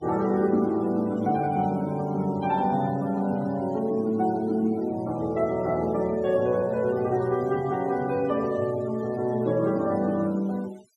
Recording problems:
denoising artefacts; signal-to-artefact ratio 24 dB

